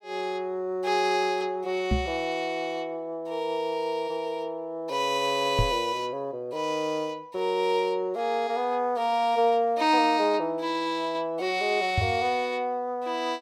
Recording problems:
knock on the microphone; at 2 s, at 5.5 s and at 12 s; peak +5 dB vs average level

